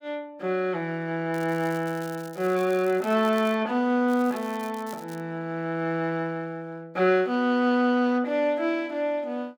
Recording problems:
crackle; from 1.5 to 3.5 s and from 4 to 5 s; loose cable, SNR 22 dB

